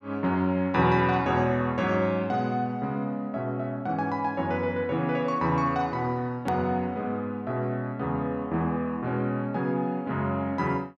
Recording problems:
hard cut with a click; at 6.5 s

